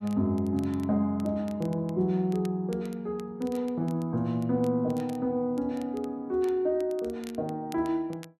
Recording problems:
crackling; vinyl, SNR 25 dB

